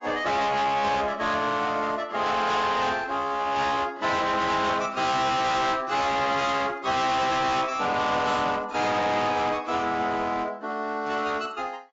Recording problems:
lossy codec; AAC, log-spectral distance 3 dB, nothing above 7.3 kHz
distortion; hard clipping, uneven, signal-to-distortion ratio 6 dB

